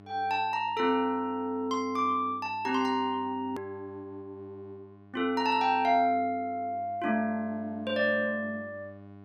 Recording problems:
electrical hum; 50 Hz, harmonics up to 1.5 kHz, SNR 22 dB
hard cut with a click; at 3.5 s

